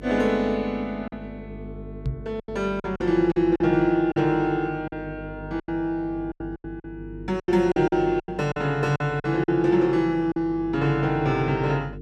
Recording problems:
hum; 50 Hz, harmonics up to 450 Hz, SNR 17 dB
packet loss; 9% of the sound replaced, filled with silence
microphone thump; at 2 s; peak -1 dB vs average level

